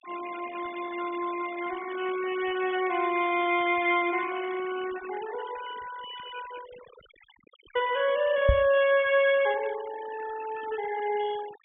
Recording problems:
low-pass filter; nothing above 3.4 kHz
denoising artefacts; signal-to-artefact ratio 16 dB
knock on the microphone; at 8.5 s; peak +7 dB vs average level

